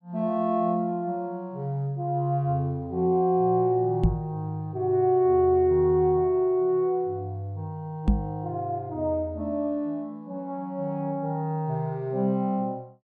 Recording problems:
microphone thump; at 4 s and at 8 s; peak +7 dB vs average level

